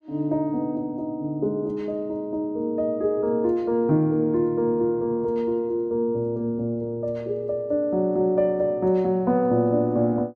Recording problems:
none

